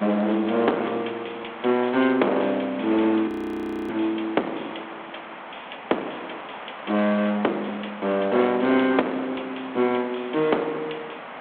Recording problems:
telephone audio; 240 Hz to 3.6 kHz, G.726
distorted audio; hard clipping, signal-to-distortion ratio 10 dB
hiss; SNR 14 dB
audio freezing; at 3.5 s for 0.5 s

